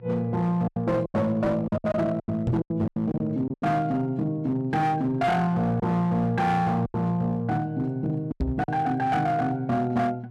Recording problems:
distorted audio; hard clipping, signal-to-distortion ratio 11 dB
hum; 60 Hz, harmonics up to 720 Hz, SNR 19 dB
packet loss; 9% of the sound replaced, filled with silence
knock on the microphone; at 2.5 s and at 8.5 s; peak +4 dB vs average level

